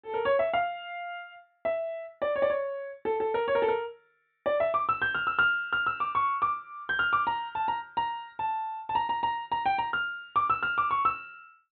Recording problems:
treble cut off; nothing above 4 kHz

